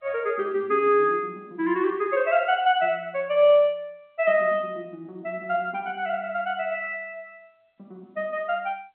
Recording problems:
phone line; 240 Hz to 3.3 kHz, G.711

